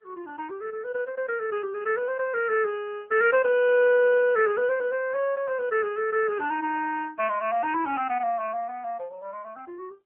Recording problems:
phone line; 340 Hz to 2.9 kHz, AMR-NB

